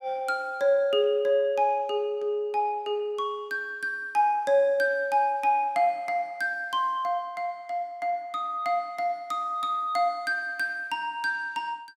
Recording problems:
none

